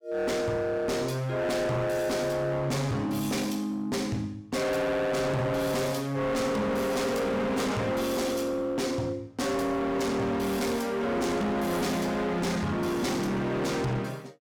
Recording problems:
distorted audio; hard clipping, signal-to-distortion ratio 6 dB

